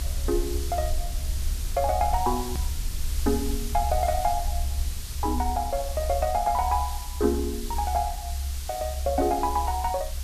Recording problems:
hiss; slope +2 dB per octave, SNR 10 dB
rumble; below 70 Hz, SNR 4 dB
click at an edit; at 2.5 s

